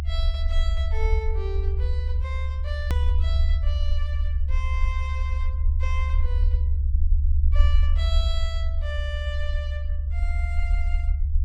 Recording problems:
low-frequency rumble; below 72 Hz, SNR -12 dB
edit click; at 3 s

